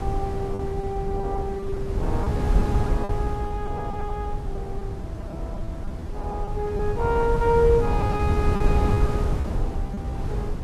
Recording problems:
wind on the microphone; below 130 Hz, SNR 0 dB
lost packets; 11% of the sound replaced, filled with repeated pitch periods

